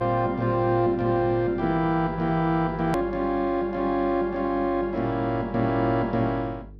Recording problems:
hum; 50 Hz, harmonics up to 450 Hz, SNR 18 dB
click at an edit; at 3 s

